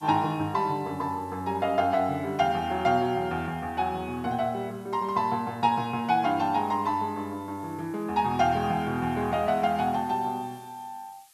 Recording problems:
hiss; SNR 29 dB

